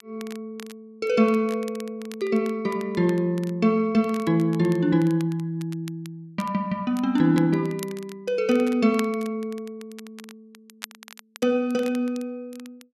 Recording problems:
crackling; vinyl, SNR 21 dB

